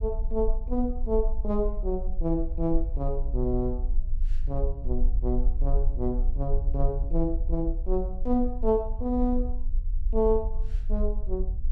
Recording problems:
rumble; below 42 Hz, strongest tone 22 Hz, SNR 1 dB

